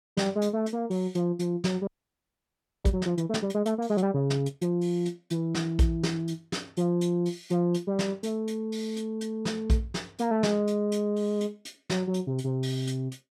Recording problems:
audio freezing; at 2 s for 1 s

